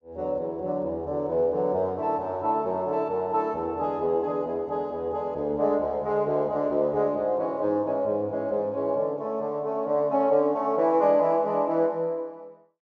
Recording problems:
low-pass filter; nothing above 8 kHz

